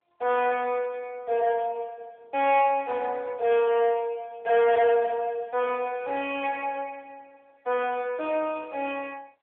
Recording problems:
phone line; 340 Hz to 3.4 kHz, AMR-NB
distorted audio; soft clipping, signal-to-distortion ratio 12 dB

